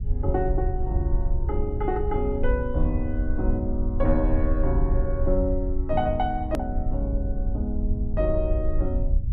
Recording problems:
rumble; below 64 Hz, SNR 0 dB
hard cut with a click; at 6.5 s

